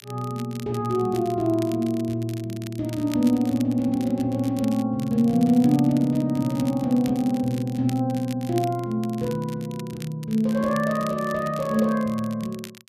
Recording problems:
crackle; vinyl, SNR 20 dB

